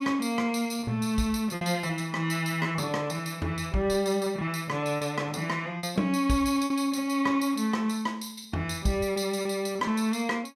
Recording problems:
lost packets; 7% of the sound replaced, filled with repeated pitch periods

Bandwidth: 15.5 kHz